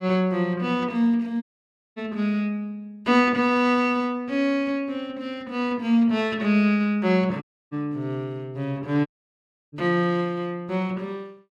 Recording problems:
audio cutting out; at 1.5 s for 0.5 s, at 7.5 s and at 9 s for 0.5 s

